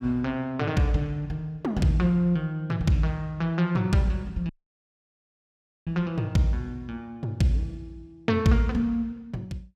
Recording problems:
dropout; at 4.5 s for 1.5 s

